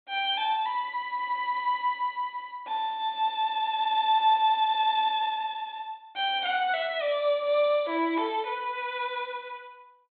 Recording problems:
treble missing; nothing above 4 kHz

